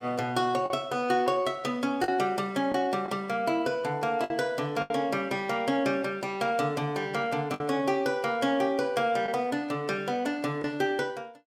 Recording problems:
packet loss; 3% of the sound replaced, filled with the last packet

